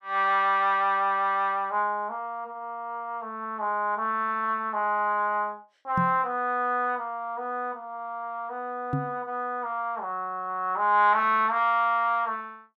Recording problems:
knock on the microphone; at 6 s and at 9 s; peak +2 dB vs average level

